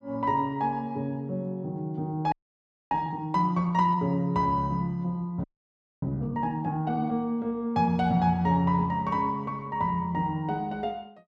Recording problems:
audio freezing; at 2.5 s for 0.5 s and at 5.5 s for 0.5 s

